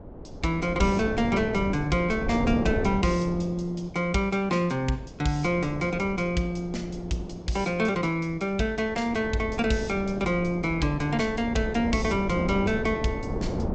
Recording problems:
treble missing; nothing above 8 kHz
wind on the microphone; below 430 Hz, SNR 8 dB

